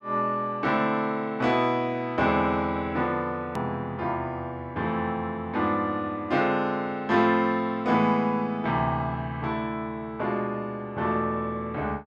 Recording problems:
click at an edit; at 3.5 s

